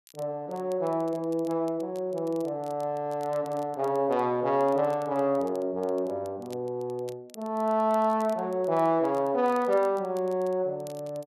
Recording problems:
crackling; vinyl, SNR 27 dB

